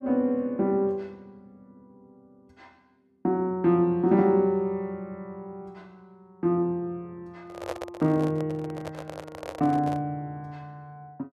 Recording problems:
handling noise; from 7.5 to 10 s; peak -3 dB vs average level

